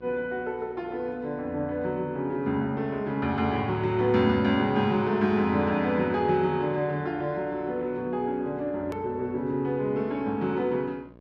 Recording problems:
hum; 60 Hz, harmonics up to 1.6 kHz, SNR 26 dB
click at an edit; at 9 s

